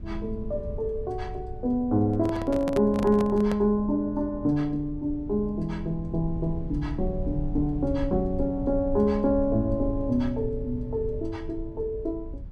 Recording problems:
low-frequency rumble; below 82 Hz, SNR 11 dB
handling noise; from 2 to 3.5 s; peak -1 dB vs average level

